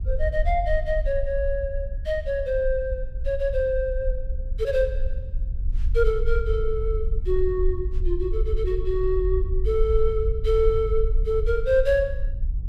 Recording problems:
low-frequency rumble; below 54 Hz, SNR 3 dB

